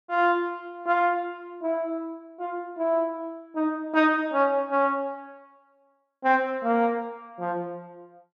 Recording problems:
none

